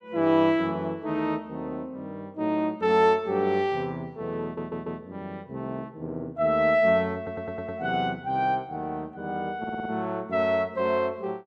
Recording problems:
audio stuttering; at 4.5 s, at 7 s and at 9.5 s

